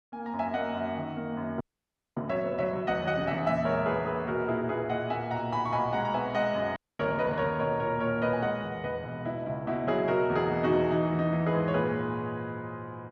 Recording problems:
frozen audio; at 1.5 s for 0.5 s and at 7 s

